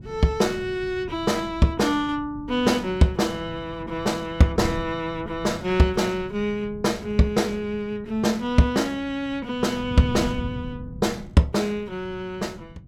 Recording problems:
wind on the microphone; below 180 Hz, SNR 15 dB

